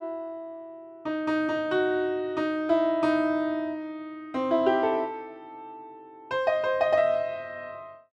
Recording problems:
none

